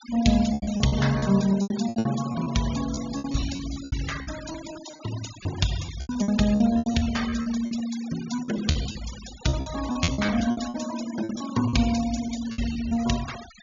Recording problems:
treble missing; nothing above 7.1 kHz
noise reduction artefacts; signal-to-artefact ratio 13 dB
lost packets; 16% of the sound replaced, filled with repeated pitch periods

